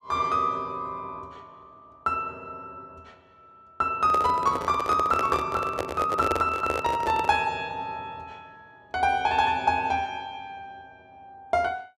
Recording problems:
microphone handling noise; from 4 to 7.5 s; peak +2 dB vs average level

